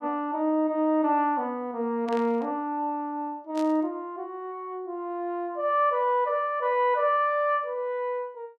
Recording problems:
burst of static; at 2 s and at 3.5 s; peak -11 dB vs average level

